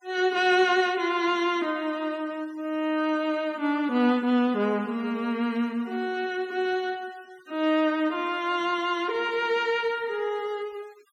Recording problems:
noise reduction artefacts; signal-to-artefact ratio 26 dB

